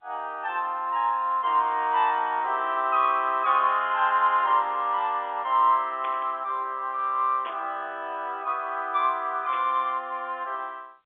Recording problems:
phone line; 260 Hz to 3.5 kHz, G.711
burst of static; at 6 s, at 7.5 s and at 9.5 s; peak -11 dB vs average level

